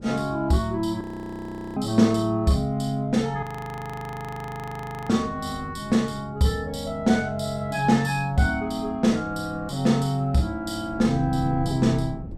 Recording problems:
wind on the microphone; below 210 Hz, SNR 16 dB
audio freezing; at 1 s for 1 s and at 3.5 s for 1.5 s

